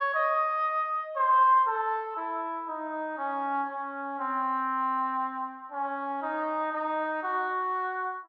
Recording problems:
none

